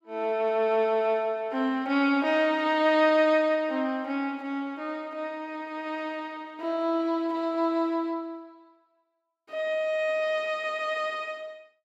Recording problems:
none

